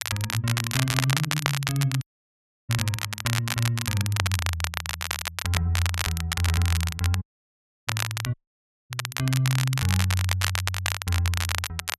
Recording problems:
crackle; vinyl, SNR 2 dB
dropout; at 2 s for 0.5 s, at 7 s for 0.5 s and at 8.5 s for 0.5 s

